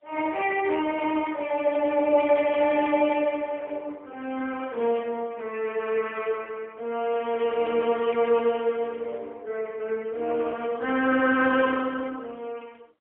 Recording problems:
telephone audio; 280 Hz to 3.2 kHz, AMR-NB, then MP3

